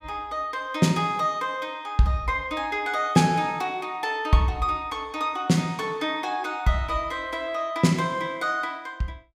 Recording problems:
none

